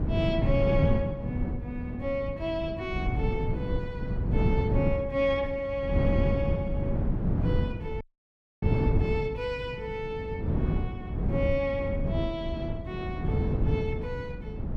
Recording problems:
hum; 50 Hz, harmonics up to 450 Hz, SNR 14 dB
wind noise; below 190 Hz, SNR -2 dB
audio cutting out; at 8 s for 0.5 s

